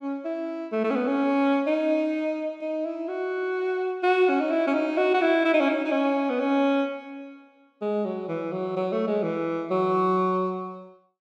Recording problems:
none

